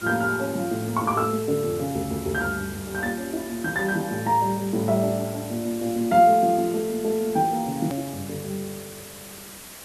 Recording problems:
background hiss; slope -2 dB per octave, SNR 15 dB
click at an edit; at 8 s

